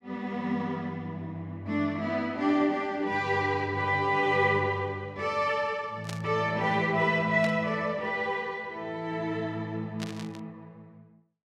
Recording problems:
burst of static; at 6 s, at 7.5 s and at 10 s; peak -5 dB vs average level

